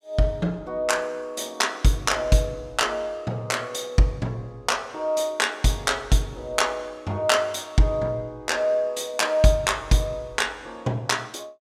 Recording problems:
none

